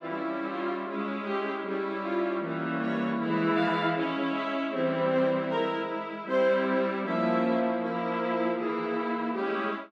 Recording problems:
none

